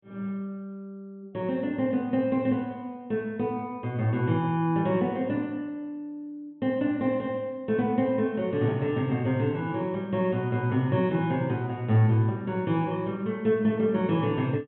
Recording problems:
treble cut off; nothing above 3.5 kHz

